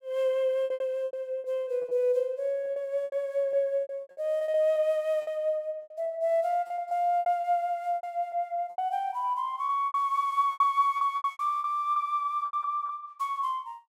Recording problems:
packet loss; 14% of the sound replaced, filled with repeated pitch periods

